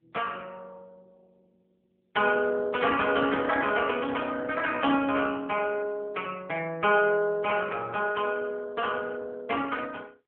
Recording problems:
phone line; 240 Hz to 3.3 kHz, AMR-NB

